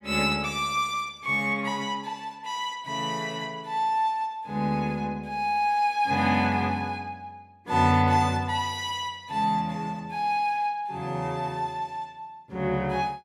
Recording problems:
none

